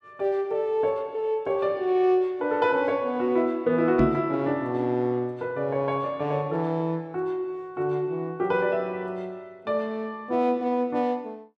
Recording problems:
microphone bump; at 4 s; peak +5 dB vs average level

